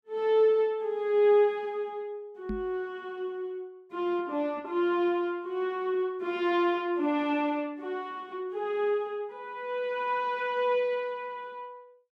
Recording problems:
microphone bump; at 2.5 s; peak -3 dB vs average level

